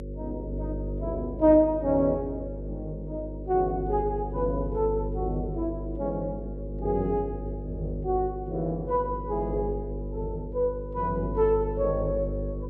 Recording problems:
hum; 50 Hz, harmonics up to 550 Hz, SNR 7 dB

